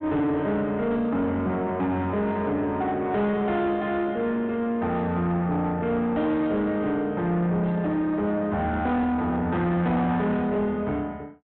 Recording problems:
treble missing; nothing above 4 kHz
distortion; soft clipping, signal-to-distortion ratio 10 dB

